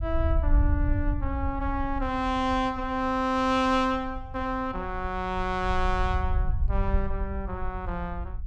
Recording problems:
low-frequency rumble; below 76 Hz, SNR 3 dB

